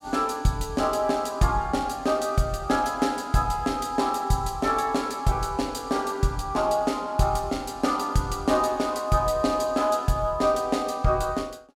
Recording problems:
none

